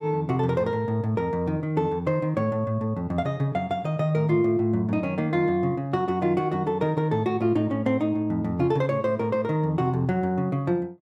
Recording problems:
none

